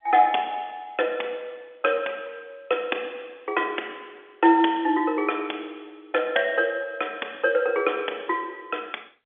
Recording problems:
phone line; 260 Hz to 3.5 kHz, G.711

